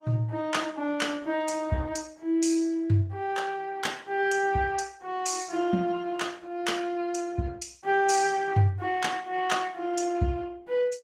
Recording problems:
lossy codec; Opus, log-spectral distance 3 dB, nothing above 18.9 kHz

